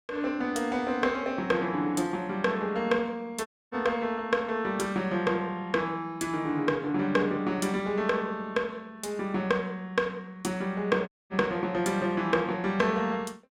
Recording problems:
dropout; at 3.5 s and at 11 s

